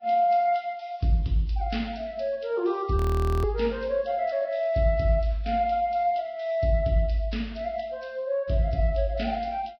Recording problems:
codec artefacts; Vorbis, log-spectral distance 3 dB
frozen audio; at 3 s

